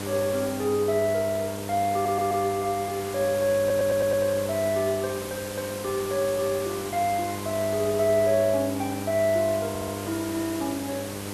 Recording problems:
electrical hum; 50 Hz, harmonics up to 1.4 kHz, SNR 9 dB
background hiss; slope -3 dB per octave, SNR 11 dB
stutter; at 2 s, at 3.5 s and at 9.5 s

